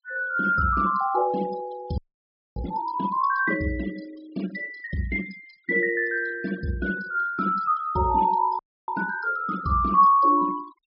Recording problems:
low-pass filter; nothing above 5.5 kHz
denoising artefacts; signal-to-artefact ratio 20 dB
audio freezing; at 2 s for 0.5 s and at 8.5 s

